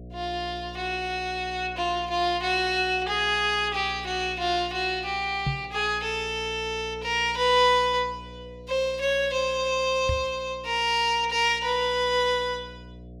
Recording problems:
hum; 60 Hz, harmonics up to 720 Hz, SNR 19 dB
knock on the microphone; at 5.5 s and at 10 s; peak +1 dB vs average level

